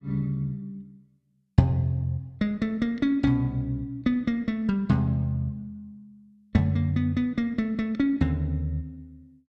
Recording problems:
none

